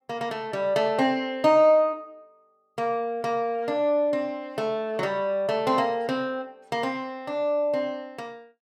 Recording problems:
none

